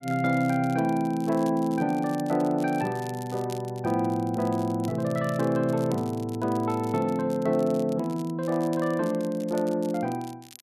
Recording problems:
crackle; vinyl, SNR 22 dB

